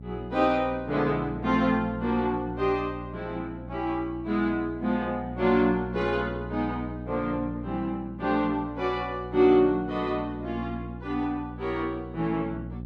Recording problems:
electrical hum; 60 Hz, harmonics up to 600 Hz, SNR 12 dB

